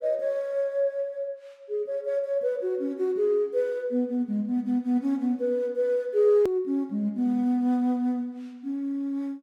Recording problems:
hard cut with a click; at 6.5 s

